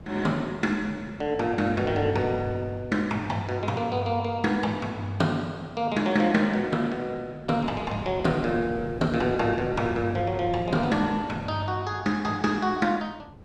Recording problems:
wind on the microphone; below 310 Hz, SNR 15 dB

